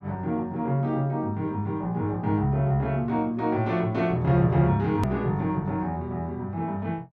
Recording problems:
hard cut with a click; at 5 s

